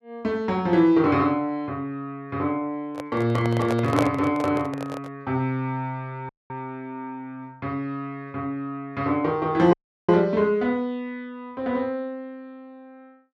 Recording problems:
handling noise; from 3 to 5 s; peak +4 dB vs average level
audio cutting out; at 6.5 s and at 9.5 s

